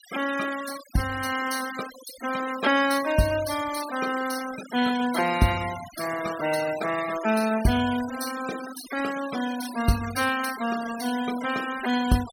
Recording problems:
noise reduction artefacts; signal-to-artefact ratio 12 dB

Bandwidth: 16.5 kHz